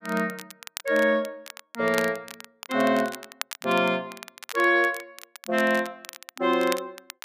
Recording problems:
crackling; vinyl, SNR 15 dB

